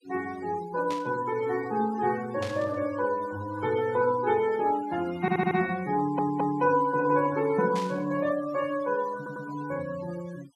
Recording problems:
denoising artefacts; signal-to-artefact ratio 18 dB
burst of static; at 1 s, at 2.5 s and at 8 s; peak -8 dB vs average level
stutter; at 5 s, at 6 s and at 9 s

